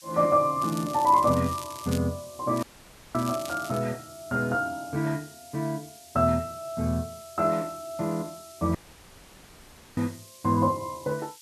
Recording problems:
hiss; slope +7 dB per octave, SNR 20 dB
crackle; from 0.5 to 2 s and from 2.5 to 4 s; loose cable, SNR 15 dB
audio cutting out; at 2.5 s for 0.5 s and at 9 s for 1 s

